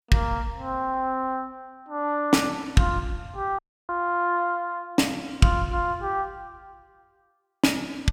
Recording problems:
audio cutting out; at 3.5 s

